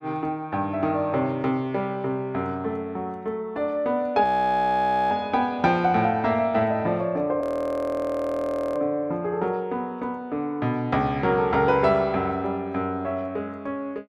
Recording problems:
frozen audio; at 4 s for 1 s and at 7.5 s for 1.5 s

